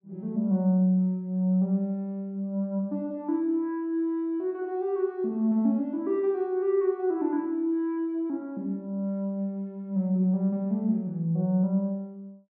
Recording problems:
none

